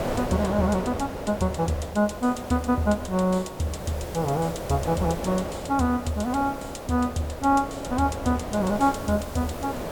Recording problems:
background hiss; SNR 21 dB
wind on the microphone; below 740 Hz, SNR 8 dB

